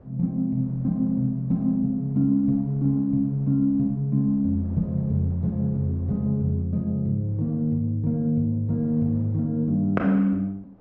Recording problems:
wind noise; below 410 Hz, SNR 25 dB

